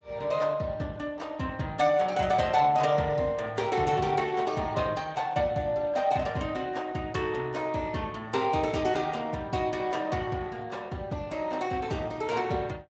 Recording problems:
lossy compression; Speex, log-spectral distance 4 dB

